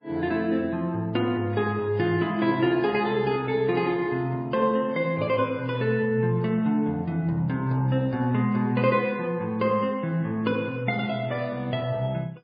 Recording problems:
lossy compression; MP3, log-spectral distance 2 dB, nothing above 4.8 kHz

